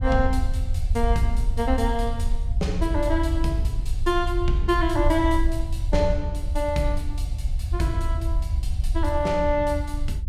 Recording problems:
low-frequency rumble; below 72 Hz, SNR 1 dB

